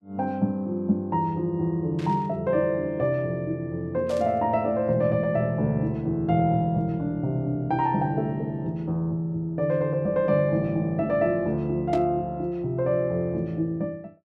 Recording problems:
burst of static; at 2 s, at 4 s and at 12 s; peak -12 dB vs average level

